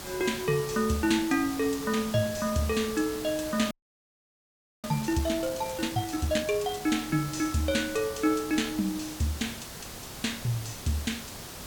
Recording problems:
background hiss; slope -2 dB per octave, SNR 10 dB
frozen audio; at 3.5 s for 1 s

